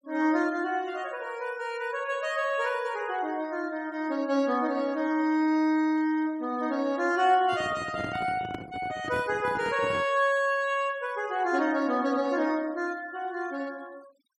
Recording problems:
noise reduction artefacts; signal-to-artefact ratio 24 dB
handling noise; from 7.5 to 10 s; peak -5 dB vs average level

